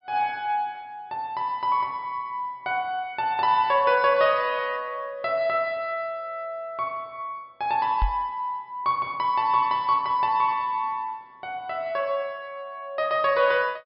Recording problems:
treble cut off; nothing above 5.5 kHz
knock on the microphone; at 8 s; peak +3 dB vs average level

